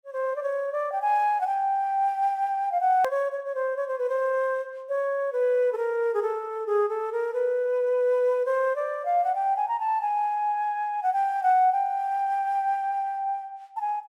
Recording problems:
click at an edit; at 3 s

